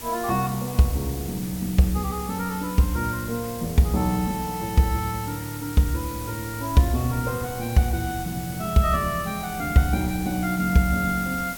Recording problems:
hiss; SNR 13 dB
wind on the microphone; below 260 Hz, SNR 20 dB

